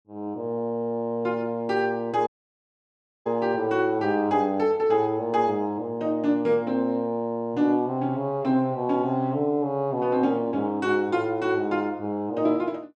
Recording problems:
dropout; at 2.5 s for 1 s

